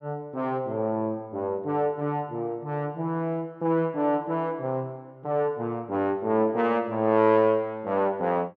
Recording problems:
none

